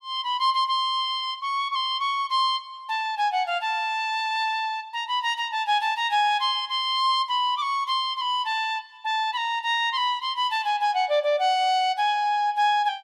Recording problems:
none

